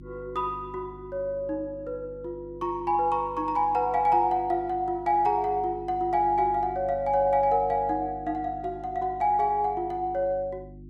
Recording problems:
hum; 50 Hz, harmonics up to 350 Hz, SNR 19 dB

